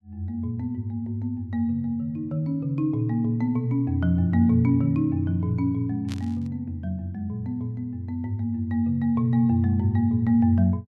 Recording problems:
static burst; at 6 s; peak -10 dB vs average level

